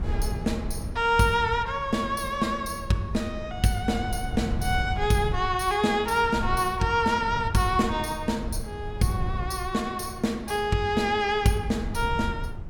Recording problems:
wind noise; below 110 Hz, SNR 10 dB

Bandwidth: 17.5 kHz